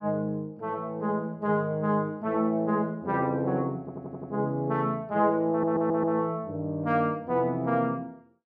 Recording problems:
audio stuttering; at 4 s and at 5.5 s

